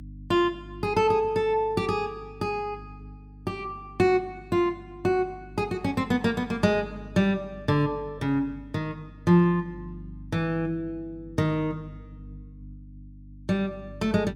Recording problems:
hum; 50 Hz, harmonics up to 300 Hz, SNR 19 dB

